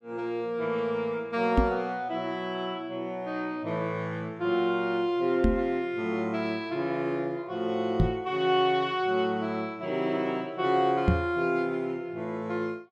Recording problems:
knock on the microphone; 4 times, first at 1.5 s; peak +9 dB vs average level

